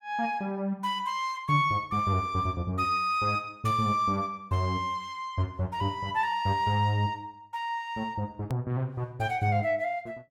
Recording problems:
edit click; at 8.5 s

